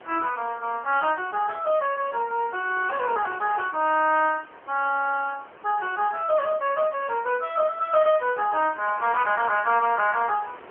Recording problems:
telephone audio; 320 Hz to 3.1 kHz, AMR-NB
wind noise; below 1.6 kHz, SNR 21 dB

